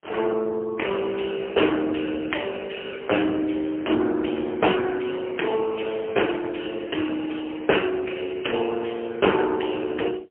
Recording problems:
phone line; 260 Hz to 3.2 kHz, AMR-NB, then MP3

